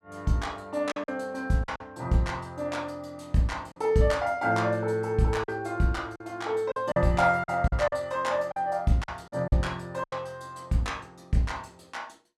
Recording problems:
lost packets; 6% of the sound replaced, filled with silence

